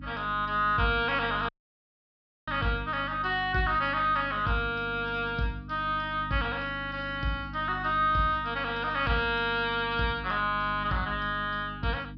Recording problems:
low-pass filter; nothing above 5.5 kHz
electrical hum; 50 Hz, harmonics up to 300 Hz, SNR 14 dB
audio cutting out; at 1.5 s for 1 s

